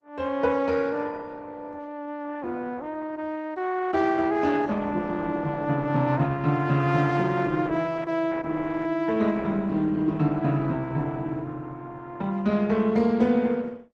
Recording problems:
lossy compression; Opus, log-spectral distance 3 dB

